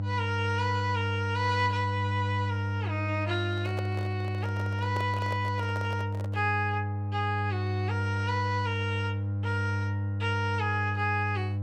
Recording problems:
electrical hum; 50 Hz, harmonics up to 500 Hz, SNR 0 dB
handling noise; from 3.5 to 6.5 s; peak -3 dB vs average level

